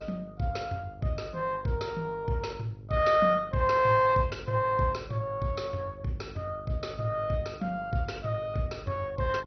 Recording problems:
codec artefacts; MP2, log-spectral distance 3 dB, nothing above 6 kHz
hum; 50 Hz, harmonics up to 650 Hz, SNR 20 dB

